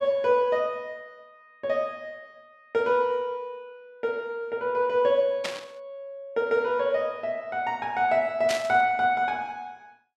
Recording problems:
burst of static; at 5.5 s and at 8.5 s; peak 0 dB vs average level

